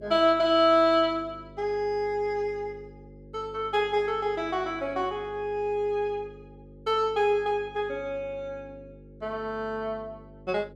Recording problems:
electrical hum; 50 Hz, harmonics up to 550 Hz, SNR 22 dB

